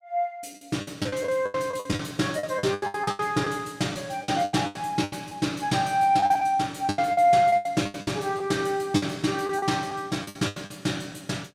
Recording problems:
packet loss; 16% of the sound replaced, filled with the last packet

